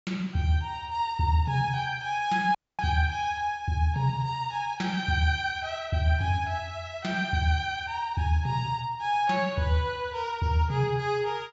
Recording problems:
treble cut off; nothing above 8 kHz
audio cutting out; at 2.5 s

